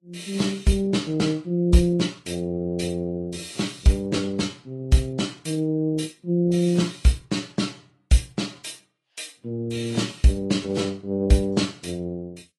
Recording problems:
lossy compression; AAC, then Vorbis, log-spectral distance 4 dB, nothing above 11.3 kHz

